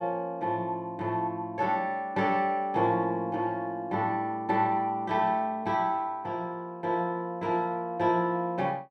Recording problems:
none

